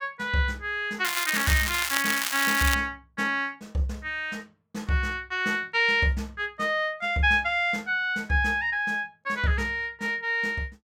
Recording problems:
crackle; from 1 to 2.5 s; loose cable, SNR 2 dB

